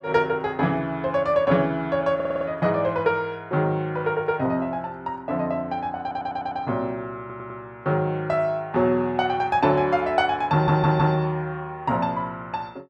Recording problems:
stutter; 4 times, first at 2 s

